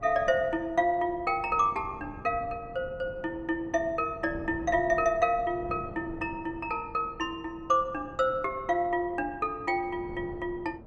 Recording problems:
wind on the microphone; below 390 Hz, SNR 17 dB

